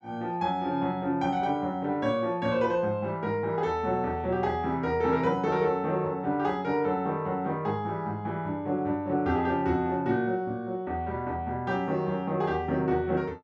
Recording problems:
none

